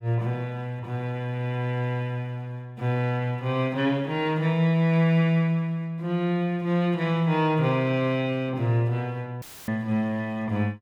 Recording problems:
dropout; at 9.5 s; filled with static

